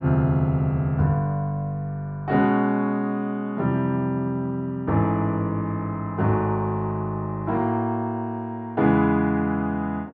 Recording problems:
none

